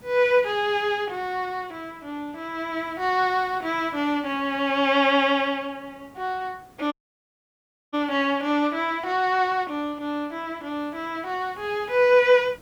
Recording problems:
hiss; slope -6 dB per octave, SNR 28 dB
dropout; at 7 s for 1 s

